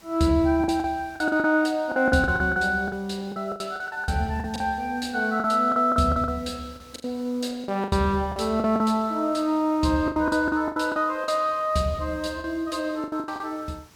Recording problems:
hiss; slope -2 dB per octave, SNR 28 dB
packet loss; 14% of the sound replaced, filled with the last packet

